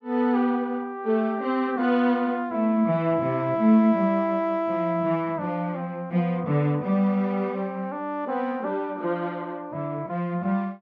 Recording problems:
none

